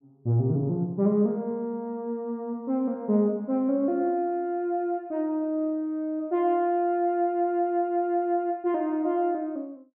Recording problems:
none

